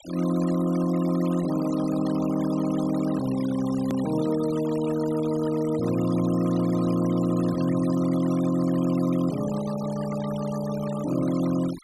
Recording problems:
noise reduction artefacts; signal-to-artefact ratio 15 dB
click at an edit; at 4 s

